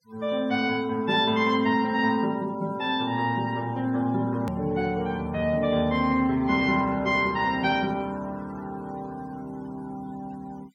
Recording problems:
denoising artefacts; signal-to-artefact ratio 26 dB
hard cut with a click; at 4.5 s

